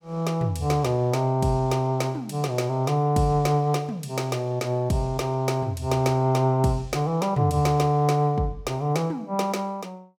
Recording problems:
none

